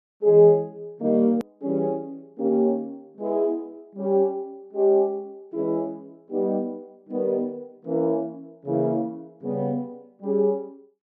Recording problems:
edit click; at 1.5 s

